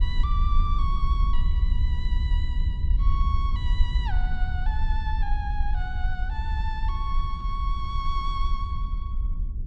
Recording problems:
rumble; below 62 Hz, SNR -8 dB

